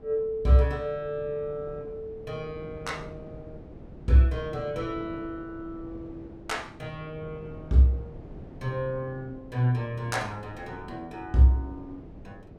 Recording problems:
wind on the microphone; below 360 Hz, SNR 17 dB

